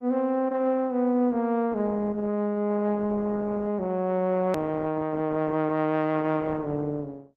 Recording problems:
codec artefacts; Opus, log-spectral distance 2 dB, nothing above 13.1 kHz
click at an edit; at 4.5 s

